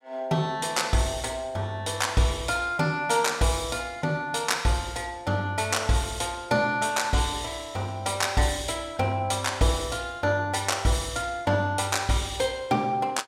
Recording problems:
none

